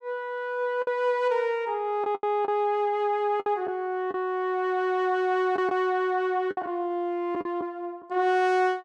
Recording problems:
lost packets; 5% of the sound replaced, filled with the last packet

